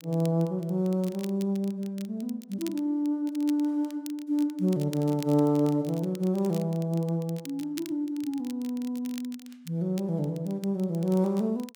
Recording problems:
crackle; vinyl, SNR 20 dB

